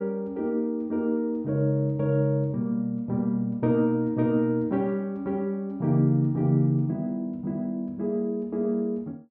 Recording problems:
none

